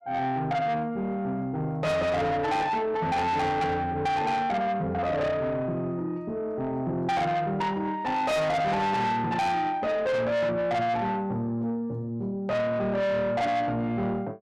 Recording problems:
distorted audio; soft clipping, signal-to-distortion ratio 8 dB

